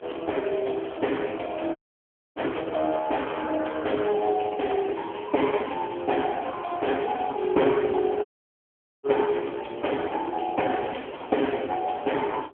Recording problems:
telephone audio; 280 Hz to 3.2 kHz, AMR-NB
wind noise; below 570 Hz, SNR 21 dB
audio cutting out; at 2 s for 0.5 s and at 8.5 s for 1 s

